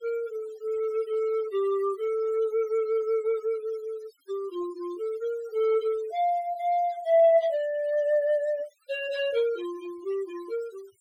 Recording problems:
denoising artefacts; signal-to-artefact ratio 22 dB

